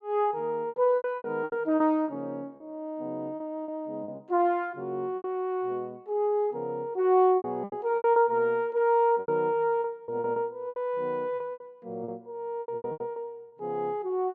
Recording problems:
lost packets; 12% of the sound replaced, filled with repeated pitch periods

